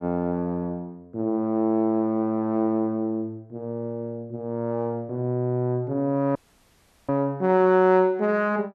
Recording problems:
audio cutting out; at 6.5 s for 0.5 s

